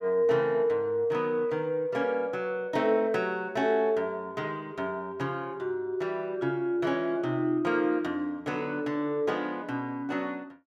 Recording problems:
none

